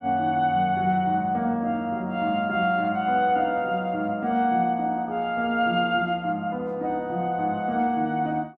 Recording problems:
none

